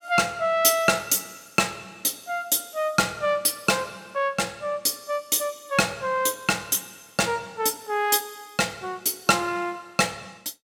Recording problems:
none

